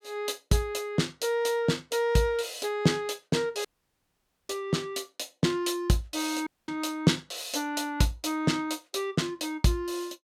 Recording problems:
dropout; at 3.5 s for 1 s and at 6.5 s

